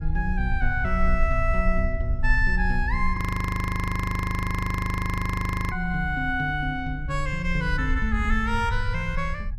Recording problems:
low-frequency rumble; below 66 Hz, strongest tone 22 Hz, SNR 3 dB
audio freezing; at 3 s for 2.5 s

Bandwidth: 14.5 kHz